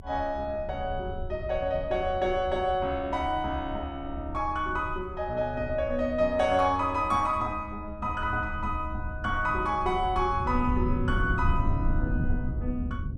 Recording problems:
rumble; below 100 Hz, strongest tone 22 Hz, SNR 7 dB

